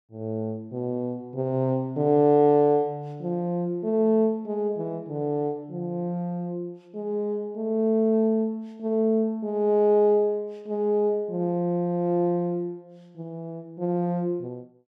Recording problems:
none

